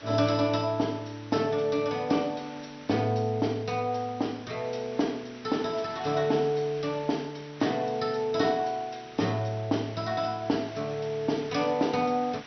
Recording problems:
lossy compression; MP2, log-spectral distance 7 dB, nothing above 5.7 kHz
hiss; slope -1 dB per octave, SNR 19 dB

